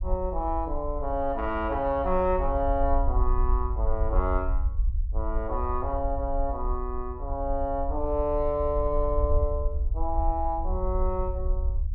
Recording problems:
treble cut off; nothing above 8 kHz
low-frequency rumble; below 58 Hz, SNR 2 dB

